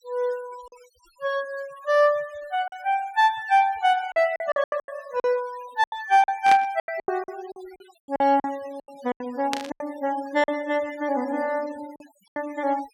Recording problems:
noise reduction artefacts; signal-to-artefact ratio 23 dB
packet loss; 11% of the sound replaced, filled with silence
static burst; at 6.5 s and at 9.5 s; peak +1 dB vs average level

